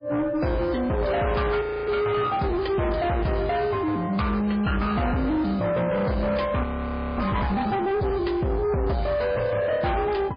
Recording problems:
lossy compression; MP3, log-spectral distance 3 dB
distorted audio; soft clipping, signal-to-distortion ratio 8 dB
audio freezing; at 1.5 s and at 6.5 s for 0.5 s

